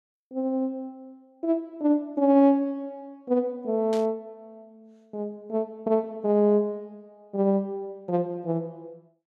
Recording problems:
burst of static; at 4 s; peak -11 dB vs average level

